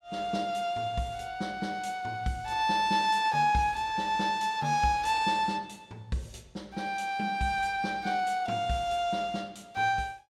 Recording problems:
none

